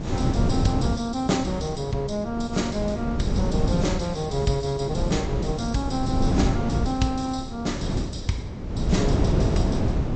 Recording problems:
treble missing; nothing above 8 kHz
codec artefacts; Vorbis, log-spectral distance 4 dB
wind on the microphone; below 260 Hz, SNR 0 dB

